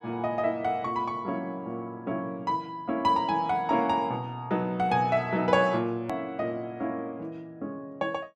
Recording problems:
click at an edit; at 6 s

